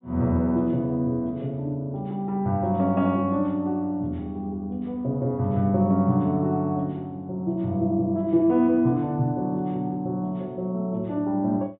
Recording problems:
treble missing; nothing above 4 kHz

